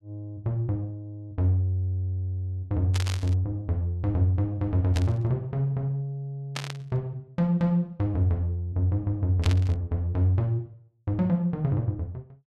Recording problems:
static burst; 4 times, first at 3 s; peak -2 dB vs average level

